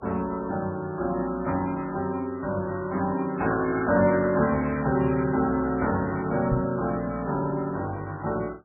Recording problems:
lossy codec; MP3, log-spectral distance 3 dB
microphone bump; at 6.5 s; peak +2 dB vs average level

